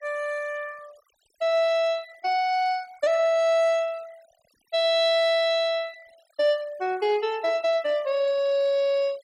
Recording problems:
noise reduction artefacts; signal-to-artefact ratio 25 dB

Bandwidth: 16.5 kHz